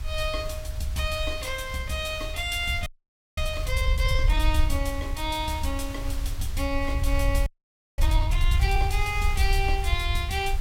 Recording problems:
hiss; slope -1 dB per octave, SNR 15 dB
low-frequency rumble; below 68 Hz, SNR 0 dB
audio freezing; at 3 s for 0.5 s and at 7.5 s for 0.5 s

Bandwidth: 16 kHz